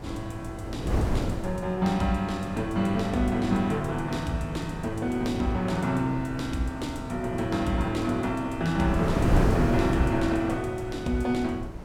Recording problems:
wind noise; below 370 Hz, SNR 5 dB

